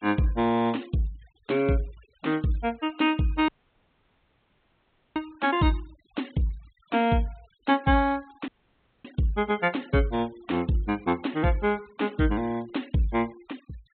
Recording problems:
treble cut off; nothing above 4 kHz
noise reduction artefacts; signal-to-artefact ratio 25 dB
dropout; at 3.5 s for 1.5 s and at 8.5 s for 0.5 s

